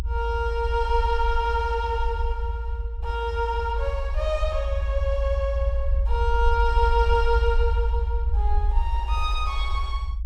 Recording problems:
low-frequency rumble; below 58 Hz, strongest tone 54 Hz, SNR 0 dB

